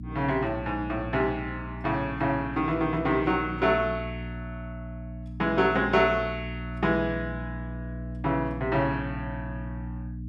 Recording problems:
hum; 60 Hz, harmonics up to 300 Hz, SNR 10 dB

